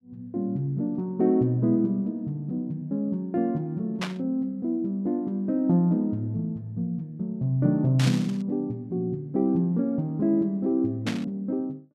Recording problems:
burst of static; at 4 s, at 8 s and at 11 s; peak -1 dB vs average level

